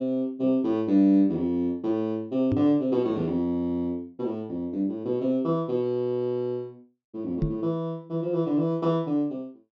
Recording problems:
treble missing; nothing above 8 kHz
microphone bump; at 2.5 s and at 7.5 s; peak +3 dB vs average level

